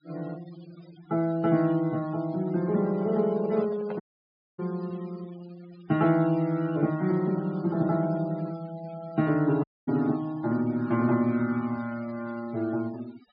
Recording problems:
treble cut off; nothing above 5 kHz
noise reduction artefacts; signal-to-artefact ratio 23 dB
handling noise; from 3 to 4 s; peak -8 dB vs average level
audio cutting out; at 4 s for 0.5 s and at 9.5 s

